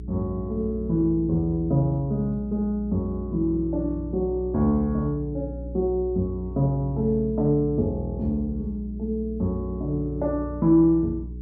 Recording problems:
hum; 60 Hz, harmonics up to 420 Hz, SNR 11 dB

